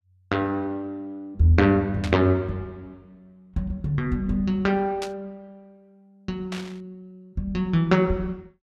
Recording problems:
burst of static; at 2 s, at 5 s and at 6.5 s; peak -5 dB vs average level

